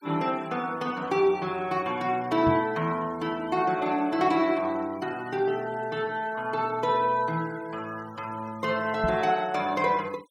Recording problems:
denoising artefacts; signal-to-artefact ratio 23 dB
microphone thump; at 2.5 s and at 9 s; peak +1 dB vs average level

